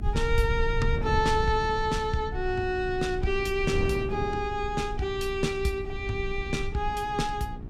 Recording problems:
electrical hum; 60 Hz, harmonics up to 1.2 kHz, SNR 18 dB
low-frequency rumble; below 76 Hz, strongest tone 24 Hz, SNR 8 dB
wind on the microphone; below 230 Hz, SNR 11 dB

